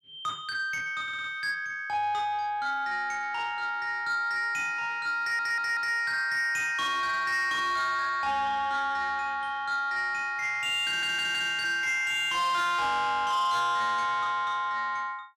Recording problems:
distortion; soft clipping, signal-to-distortion ratio 10 dB
stutter; at 1 s, at 5 s and at 11 s

